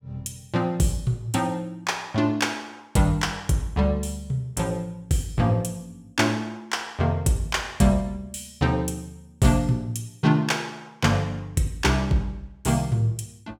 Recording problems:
none

